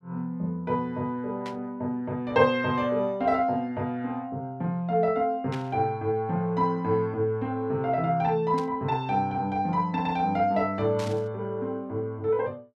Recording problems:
burst of static; 4 times, first at 1.5 s; peak -9 dB vs average level

